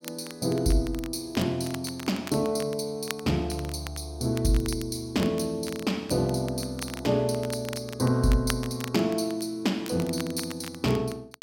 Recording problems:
crackling; vinyl, SNR 14 dB

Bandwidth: 16.5 kHz